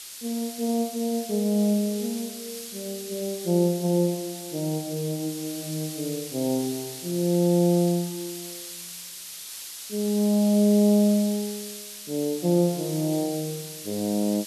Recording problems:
background hiss; slope +4 dB per octave, SNR 11 dB

